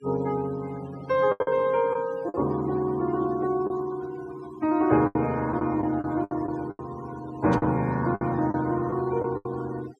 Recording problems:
noise reduction artefacts; signal-to-artefact ratio 19 dB
packet loss; 8% of the sound replaced, filled with the last packet
burst of static; at 7.5 s; peak -12 dB vs average level

